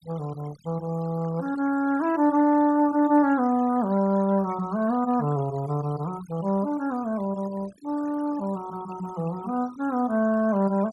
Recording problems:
noise reduction artefacts; signal-to-artefact ratio 21 dB

